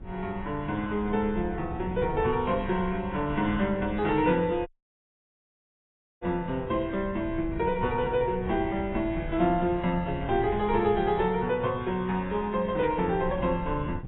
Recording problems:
lossy codec; AAC, log-spectral distance 2 dB, nothing above 3.3 kHz
wind on the microphone; below 130 Hz, SNR 13 dB
audio cutting out; at 4.5 s for 1.5 s

